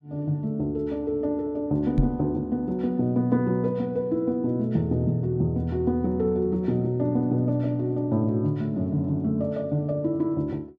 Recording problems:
knock on the microphone; at 2 s; peak +7 dB vs average level

